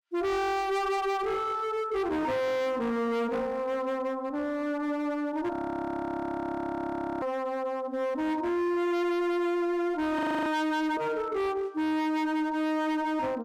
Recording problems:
distorted audio; hard clipping, signal-to-distortion ratio 7 dB
audio freezing; at 5.5 s for 1.5 s and at 10 s

